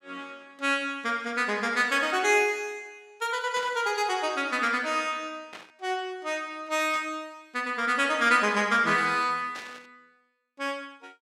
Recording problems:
static burst; 4 times, first at 3.5 s; peak -10 dB vs average level

